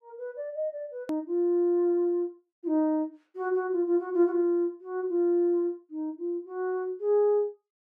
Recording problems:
hard cut with a click; at 1 s

